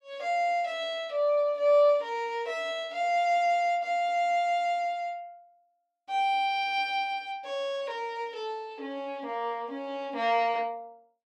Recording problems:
none

